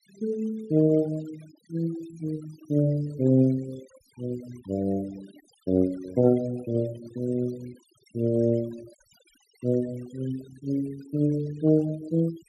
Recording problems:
denoising artefacts; signal-to-artefact ratio 22 dB

